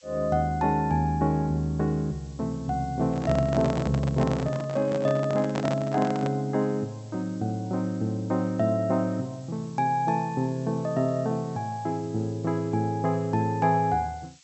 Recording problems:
low-pass filter; nothing above 7.9 kHz
hiss; slope +5 dB per octave, SNR 27 dB
handling noise; from 3 to 6.5 s; peak -1 dB vs average level

